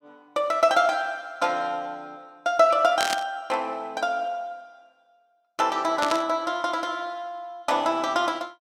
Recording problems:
static burst; at 3 s and at 6 s; peak +1 dB vs average level

